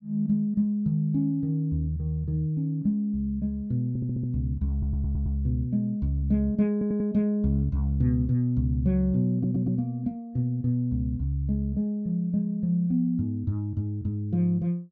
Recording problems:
audio stuttering; 4 times, first at 4 s

